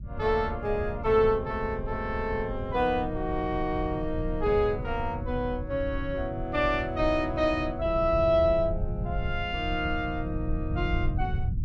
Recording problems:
rumble; below 110 Hz, SNR 7 dB

